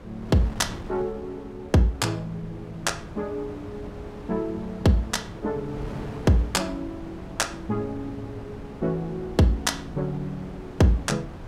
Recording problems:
wind noise; below 480 Hz, SNR 13 dB

